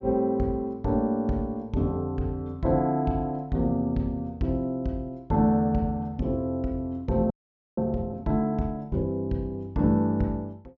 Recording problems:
low-pass filter; nothing above 7.3 kHz
frozen audio; at 7.5 s

